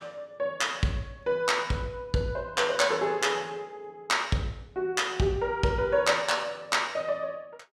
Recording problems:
none

